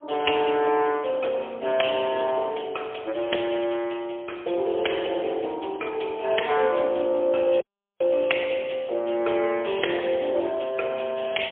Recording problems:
telephone audio; 300 Hz to 3.3 kHz, AMR-NB, then MP3
dropout; at 7.5 s

